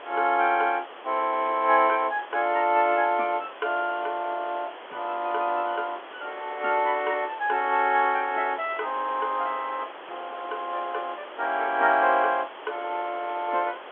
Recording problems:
telephone audio; 300 Hz to 3.5 kHz, G.711
hiss; SNR 15 dB

